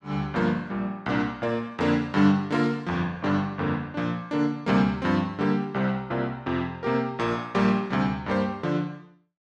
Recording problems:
none

